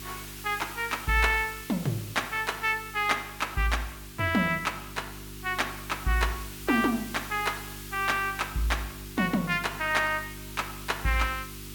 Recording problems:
hum; 50 Hz, harmonics up to 400 Hz, SNR 17 dB
hiss; SNR 14 dB

